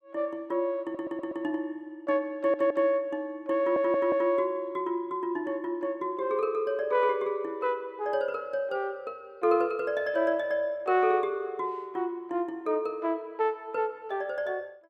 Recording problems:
stutter; at 1 s, at 2.5 s and at 3.5 s

